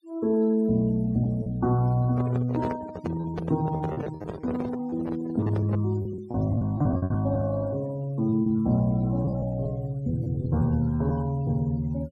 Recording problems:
denoising artefacts; signal-to-artefact ratio 22 dB
packet loss; 9% of the sound replaced, filled with repeated pitch periods
handling noise; from 2 to 6 s; peak -2 dB vs average level

